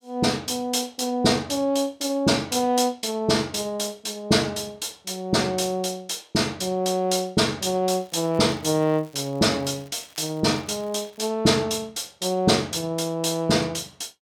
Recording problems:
crackling; from 8 to 11 s; loose cable, SNR 28 dB

